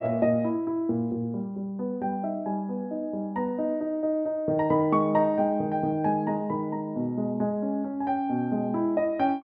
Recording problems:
none

